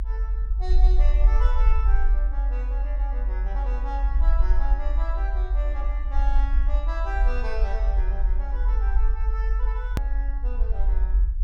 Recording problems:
rumble; below 46 Hz, SNR -12 dB
edit click; at 10 s

